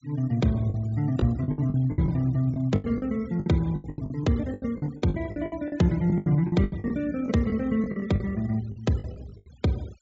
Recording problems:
low-pass filter; nothing above 8 kHz
noise reduction artefacts; signal-to-artefact ratio 24 dB
lost packets; 17% of the sound replaced, filled with the last packet

